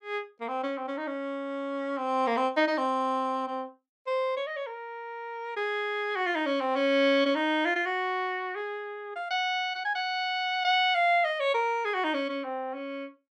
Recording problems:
none

